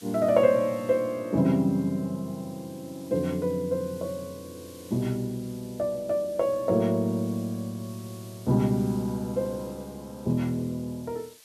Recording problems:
background hiss; slope +2 dB per octave, SNR 23 dB

